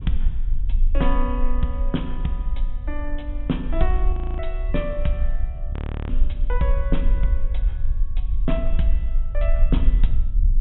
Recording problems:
treble missing; nothing above 3.7 kHz
rumble; below 44 Hz, strongest tone 20 Hz, SNR -4 dB
frozen audio; at 4 s and at 5.5 s

